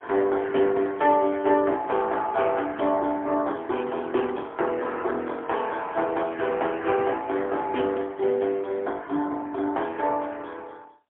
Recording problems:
telephone audio; 240 Hz to 3.3 kHz, AMR-NB, then MP3

